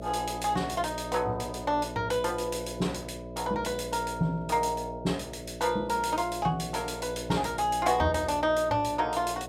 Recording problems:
electrical hum; 60 Hz, harmonics up to 660 Hz, SNR 11 dB

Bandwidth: 16 kHz